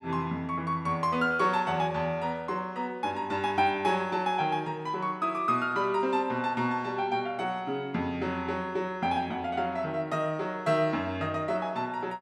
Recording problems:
none

